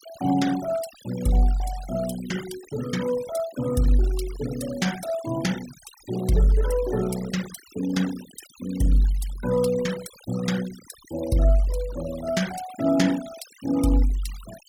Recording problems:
denoising artefacts; signal-to-artefact ratio 16 dB

